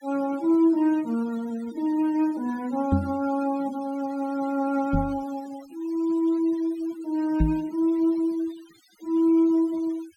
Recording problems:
noise reduction artefacts; signal-to-artefact ratio 23 dB
microphone bump; at 3 s, at 5 s and at 7.5 s; peak +6 dB vs average level

